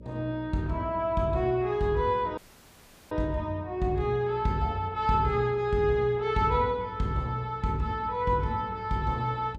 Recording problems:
hum; 60 Hz, harmonics up to 600 Hz, SNR 20 dB
dropout; at 2.5 s for 0.5 s

